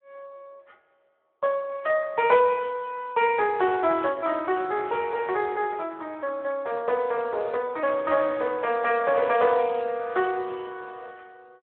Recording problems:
telephone audio; 340 Hz to 3.3 kHz, Speex

